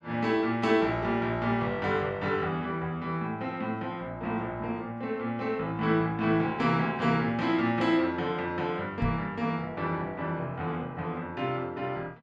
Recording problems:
microphone thump; at 9 s; peak +1 dB vs average level

